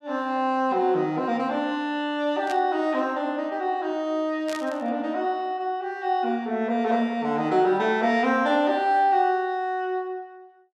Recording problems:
burst of static; at 2.5 s and at 4.5 s; peak -9 dB vs average level

